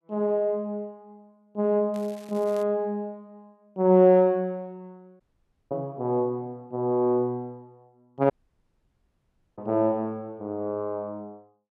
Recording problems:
crackle; at 2 s; loose cable, SNR 26 dB
dropout; at 5 s for 0.5 s and at 8.5 s for 1.5 s

